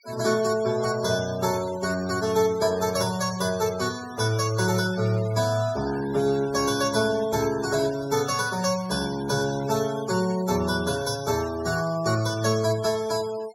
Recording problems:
noise reduction artefacts; signal-to-artefact ratio 17 dB

